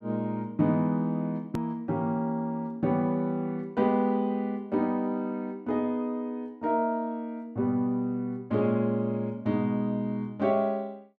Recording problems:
hard cut with a click; at 1.5 s

